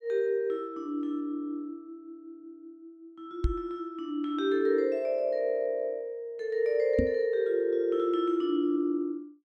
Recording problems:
microphone bump; at 3.5 s and at 7 s; peak +5 dB vs average level

